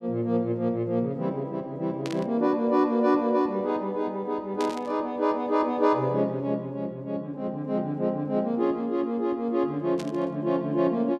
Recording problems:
static burst; at 2 s, at 4.5 s and at 10 s; peak -7 dB vs average level

